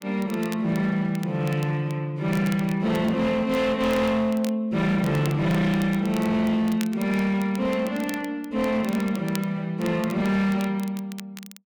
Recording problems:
distortion; hard clipping, signal-to-distortion ratio 11 dB
crackle; vinyl, SNR 20 dB

